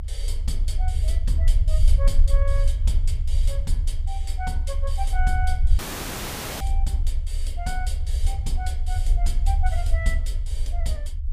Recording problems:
low-frequency rumble; below 62 Hz, strongest tone 26 Hz, SNR -10 dB
dropout; at 6 s for 1 s

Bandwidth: 15 kHz